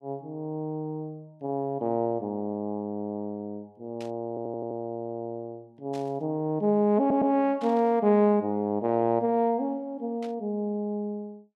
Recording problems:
static burst; 4 times, first at 4 s; peak -14 dB vs average level
audio stuttering; at 4.5 s and at 7 s

